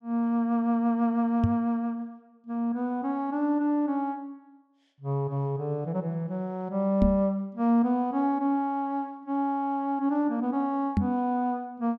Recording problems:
microphone thump; at 1.5 s, at 7 s and at 11 s; peak +6 dB vs average level

